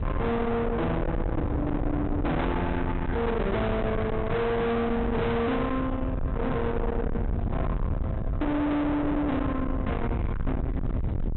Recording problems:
treble cut off; nothing above 4 kHz
distorted audio; soft clipping, signal-to-distortion ratio 6 dB
rumble; below 440 Hz, SNR 3 dB
microphone handling noise; from 3.5 to 5.5 s; peak -6 dB vs average level

